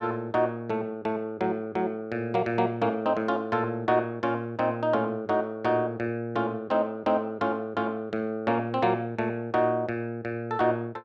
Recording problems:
none

